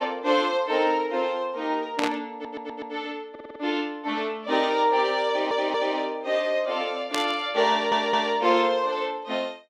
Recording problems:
static burst; at 2 s and at 7 s; peak +1 dB vs average level
stutter; 4 times, first at 2.5 s

